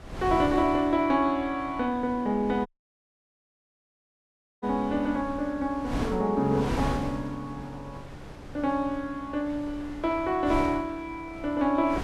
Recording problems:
wind noise; below 660 Hz, SNR 11 dB
dropout; at 2.5 s for 2 s

